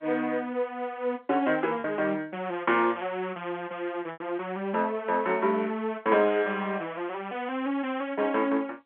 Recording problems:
phone line; 240 Hz to 3.5 kHz, G.711
packet loss; 1.4% of the sound replaced, filled with repeated pitch periods

